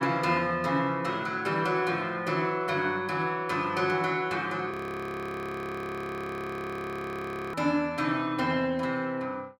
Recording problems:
frozen audio; at 4.5 s for 3 s

